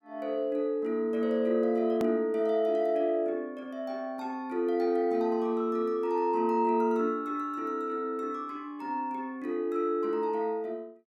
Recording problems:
click at an edit; at 2 s

